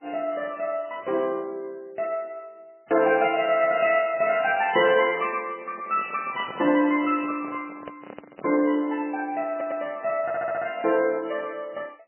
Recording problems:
lossy compression; MP3, log-spectral distance 3 dB, nothing above 2.7 kHz
microphone handling noise; from 4.5 to 8.5 s; peak -10 dB vs average level
audio stuttering; at 9.5 s and at 10 s

